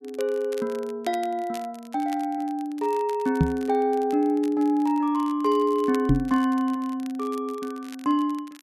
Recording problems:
crackle; vinyl, SNR 23 dB
knock on the microphone; at 3.5 s and at 6 s; peak +8 dB vs average level

